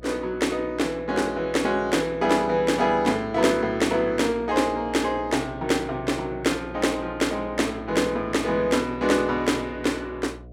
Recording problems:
hum; 60 Hz, harmonics up to 720 Hz, SNR 20 dB

